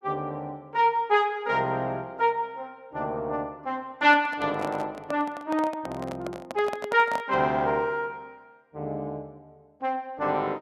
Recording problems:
handling noise; from 4 to 7.5 s; peak -3 dB vs average level

